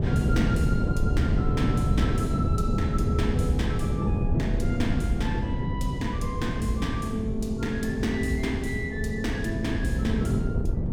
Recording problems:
wind on the microphone; below 200 Hz, SNR -3 dB

